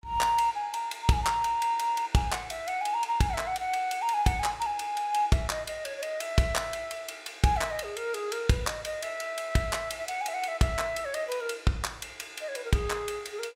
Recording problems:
none

